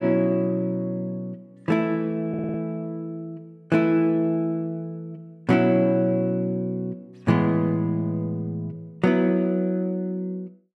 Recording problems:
audio stuttering; at 2.5 s

